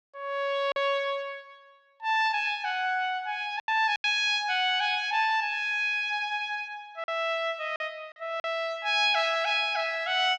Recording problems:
packet loss; 4% of the sound replaced, filled with silence

